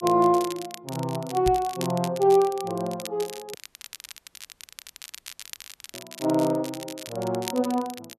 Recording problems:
crackle; vinyl, SNR 15 dB
knock on the microphone; at 1.5 s; peak -3 dB vs average level
dropout; at 3.5 s for 2.5 s

